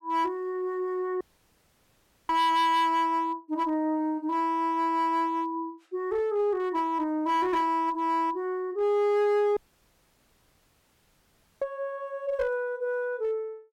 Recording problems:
distorted audio; hard clipping, uneven, signal-to-distortion ratio 11 dB
audio cutting out; at 1 s for 1 s and at 9.5 s for 2 s

